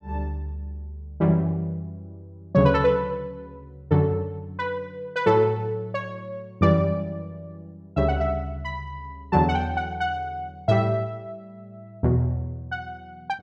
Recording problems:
none

